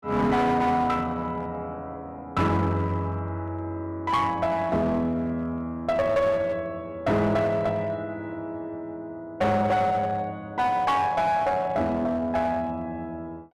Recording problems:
distortion; hard clipping, uneven, signal-to-distortion ratio 10 dB

